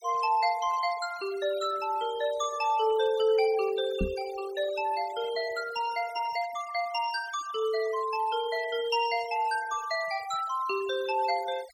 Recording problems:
noise reduction artefacts; signal-to-artefact ratio 17 dB
microphone thump; at 4 s; peak +2 dB vs average level

